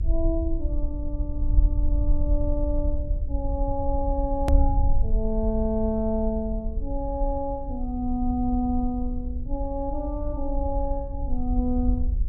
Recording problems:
hum; 60 Hz, harmonics up to 540 Hz, SNR 20 dB
rumble; below 60 Hz, SNR 0 dB
click at an edit; at 4.5 s

